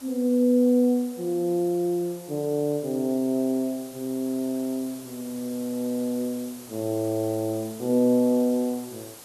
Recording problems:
background hiss; SNR 18 dB

